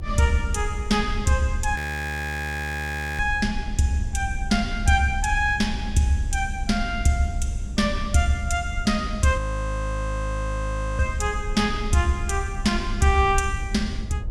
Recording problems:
hum; 50 Hz, harmonics up to 600 Hz, SNR 19 dB
low-frequency rumble; below 72 Hz, SNR 8 dB
audio freezing; at 2 s for 1.5 s and at 9.5 s for 1.5 s

